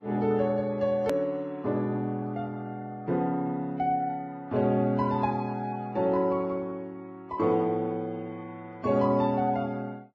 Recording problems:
lossy codec; Vorbis, log-spectral distance 2 dB, nothing above 13.1 kHz
click at an edit; at 1 s

